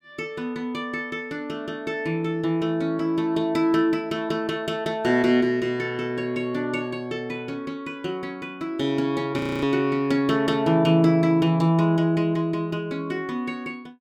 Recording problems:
audio freezing; at 9.5 s

